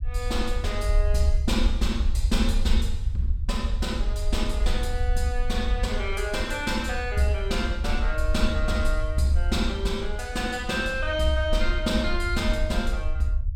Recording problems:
rumble; below 62 Hz, SNR 1 dB

